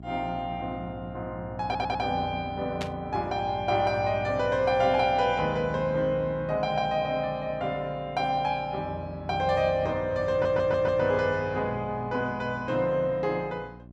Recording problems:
electrical hum; 60 Hz, harmonics up to 720 Hz, SNR 16 dB
audio stuttering; at 1.5 s and at 10 s
static burst; at 3 s; peak -4 dB vs average level

